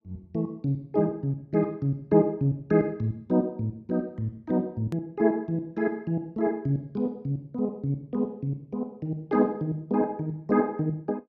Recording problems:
click at an edit; at 5 s

